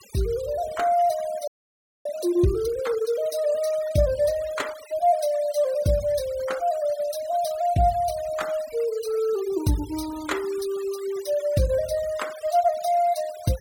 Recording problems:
denoising artefacts; signal-to-artefact ratio 18 dB
audio freezing; at 1.5 s for 0.5 s

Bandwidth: 17.5 kHz